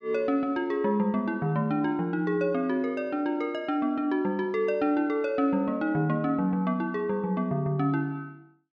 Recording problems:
none

